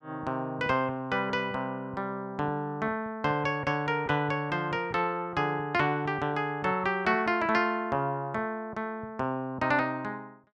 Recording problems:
none

